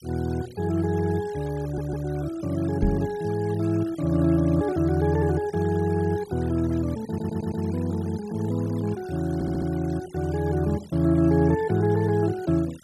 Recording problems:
noise reduction artefacts; signal-to-artefact ratio 22 dB
stutter; at 1.5 s, at 7 s and at 9.5 s
microphone bump; at 3 s; peak +3 dB vs average level

